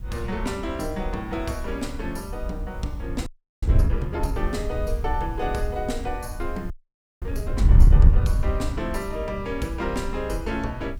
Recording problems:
background hiss; SNR 28 dB
wind noise; below 78 Hz, SNR -4 dB
frozen audio; at 3.5 s and at 6.5 s for 0.5 s

